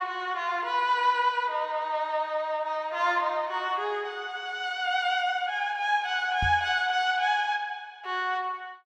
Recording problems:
microphone thump; at 6.5 s; peak -1 dB vs average level

